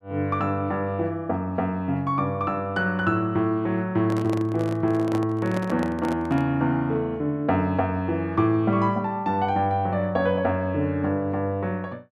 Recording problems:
handling noise; from 4 to 6.5 s; peak -4 dB vs average level

